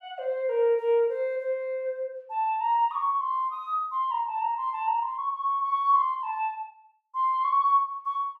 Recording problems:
none

